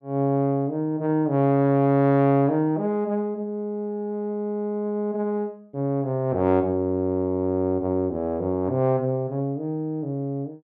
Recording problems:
none

